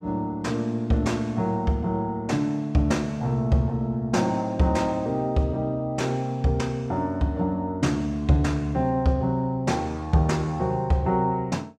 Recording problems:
none

